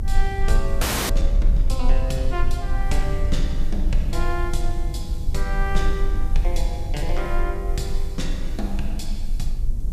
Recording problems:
hiss; SNR 22 dB
low-frequency rumble; below 46 Hz, strongest tone 20 Hz, SNR -4 dB
audio freezing; at 1 s

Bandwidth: 14.5 kHz